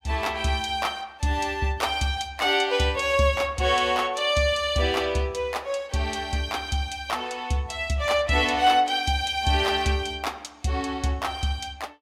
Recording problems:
none

